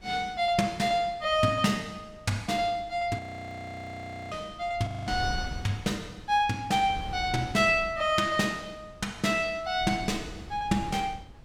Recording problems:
wind on the microphone; below 200 Hz, SNR 16 dB
audio freezing; at 3 s for 1 s and at 5 s

